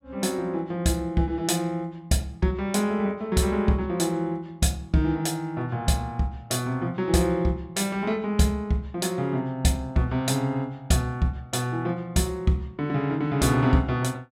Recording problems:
none

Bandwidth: 16 kHz